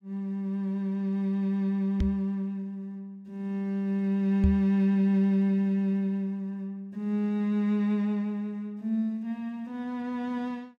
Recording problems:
microphone thump; at 2 s and at 4.5 s; peak +6 dB vs average level

